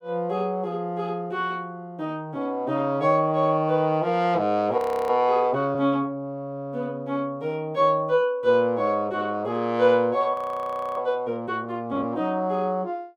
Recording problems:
audio freezing; at 5 s and at 10 s for 0.5 s

